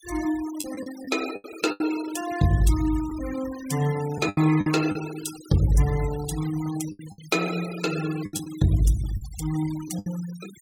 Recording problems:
noise reduction artefacts; signal-to-artefact ratio 14 dB
lost packets; 8% of the sound replaced, filled with the last packet

